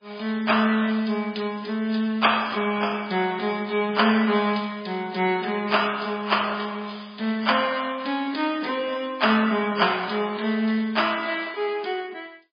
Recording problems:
lossy compression; MP3, log-spectral distance 8 dB

